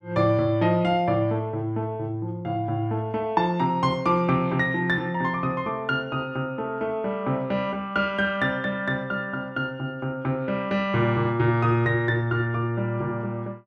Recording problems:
none

